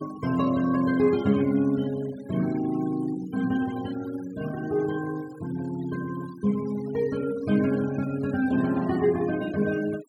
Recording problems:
noise reduction artefacts; signal-to-artefact ratio 19 dB

